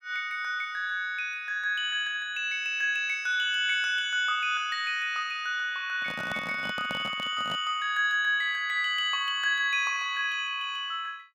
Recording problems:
microphone handling noise; from 6 to 7.5 s; peak -6 dB vs average level

